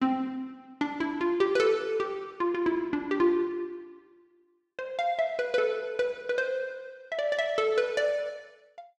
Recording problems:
none

